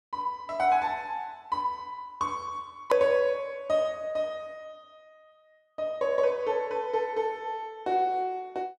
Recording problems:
hard cut with a click; at 3 s

